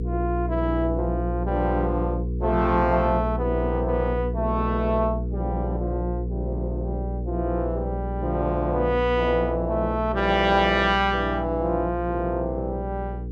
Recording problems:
hum; 60 Hz, harmonics up to 480 Hz, SNR 5 dB

